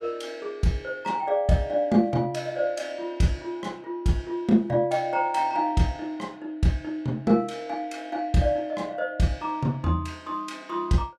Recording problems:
none

